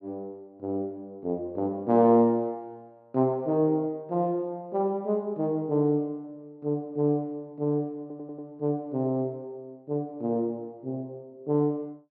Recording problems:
stutter; at 8 s

